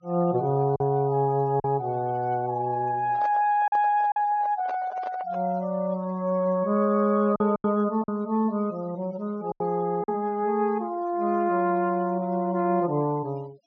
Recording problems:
treble cut off; nothing above 6.4 kHz
denoising artefacts; signal-to-artefact ratio 27 dB
packet loss; 3% of the sound replaced, filled with silence
handling noise; from 3 to 5.5 s; peak -7 dB vs average level

